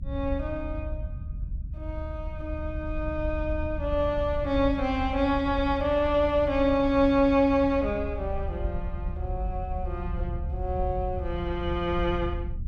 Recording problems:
rumble; below 76 Hz, SNR 8 dB

